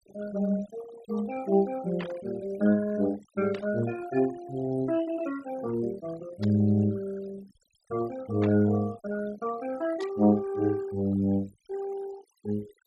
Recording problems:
denoising artefacts; signal-to-artefact ratio 18 dB
static burst; 5 times, first at 2 s; peak -6 dB vs average level

